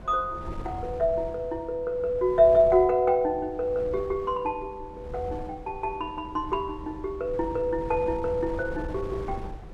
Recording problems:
wind noise; below 250 Hz, SNR 15 dB

